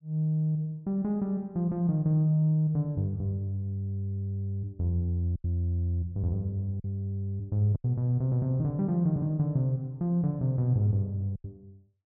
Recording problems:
lost packets; 2% of the sound replaced, filled with silence

